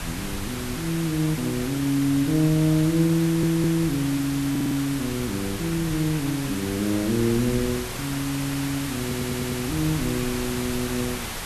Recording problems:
hiss; slope -2 dB per octave, SNR 8 dB
wind on the microphone; below 140 Hz, SNR 16 dB
stutter; at 3 s, at 4.5 s and at 9 s

